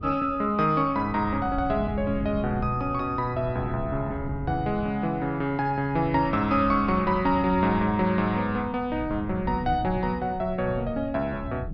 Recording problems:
treble cut off; nothing above 5.5 kHz
wind on the microphone; below 150 Hz, SNR 12 dB

